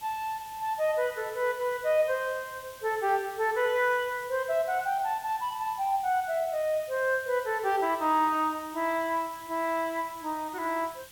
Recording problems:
hiss; slope 0 dB per octave, SNR 19 dB

